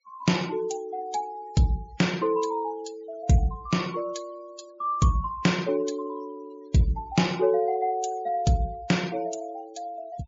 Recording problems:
treble missing; nothing above 7.3 kHz
denoising artefacts; signal-to-artefact ratio 21 dB

